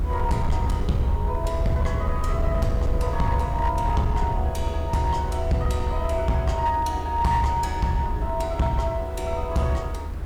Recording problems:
distorted audio; hard clipping, signal-to-distortion ratio 11 dB
hiss; slope -8 dB per octave, SNR 16 dB
low-frequency rumble; below 78 Hz, SNR 3 dB

